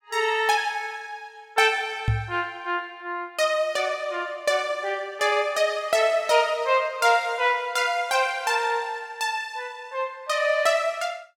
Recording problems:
microphone thump; at 2 s; peak +4 dB vs average level

